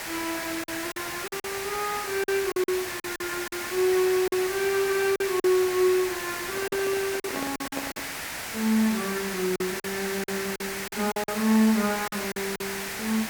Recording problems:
hiss; SNR 5 dB
lost packets; 9% of the sound replaced, filled with silence
handling noise; from 6.5 to 8 s; peak -4 dB vs average level

